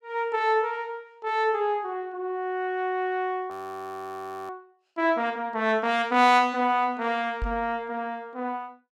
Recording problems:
frozen audio; at 3.5 s for 1 s
microphone thump; at 7.5 s; peak -2 dB vs average level

